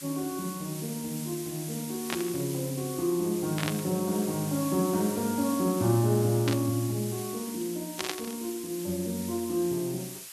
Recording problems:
background hiss; slope +4 dB per octave, SNR 9 dB
static burst; 4 times, first at 2 s; peak +2 dB vs average level

